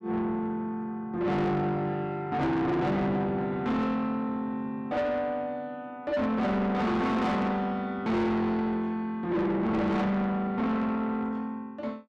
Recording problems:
distorted audio; soft clipping, signal-to-distortion ratio 7 dB

